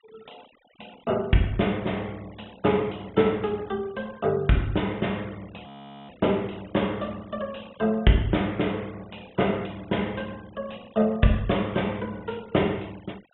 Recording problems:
low-pass filter; nothing above 3.5 kHz
denoising artefacts; signal-to-artefact ratio 25 dB
frozen audio; at 5.5 s

